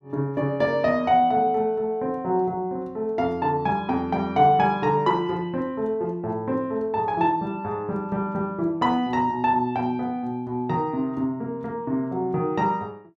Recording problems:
none

